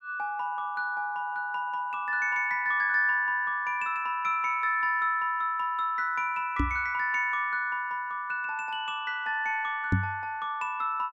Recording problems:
microphone bump; at 6.5 s and at 10 s; peak +6 dB vs average level

